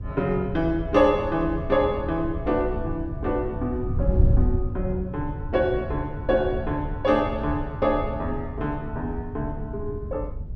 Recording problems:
wind on the microphone; below 110 Hz, SNR 5 dB

